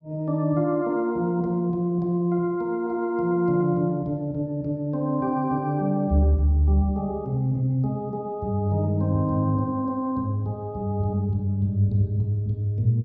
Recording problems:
none

